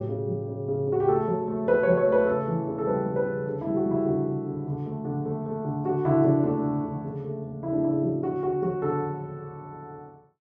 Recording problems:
none

